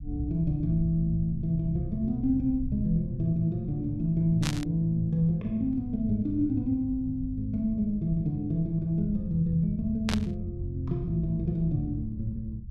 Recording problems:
rumble; below 88 Hz, SNR 14 dB
burst of static; at 4.5 s and at 10 s; peak 0 dB vs average level

